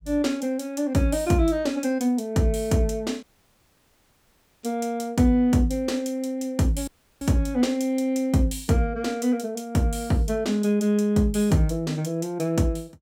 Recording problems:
dropout; at 3 s for 1.5 s and at 7 s

